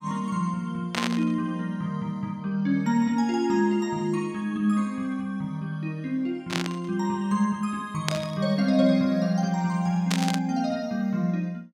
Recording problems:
burst of static; 4 times, first at 1 s; peak +3 dB vs average level

